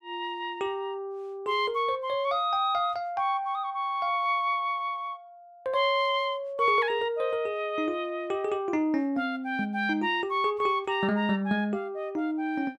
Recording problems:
none

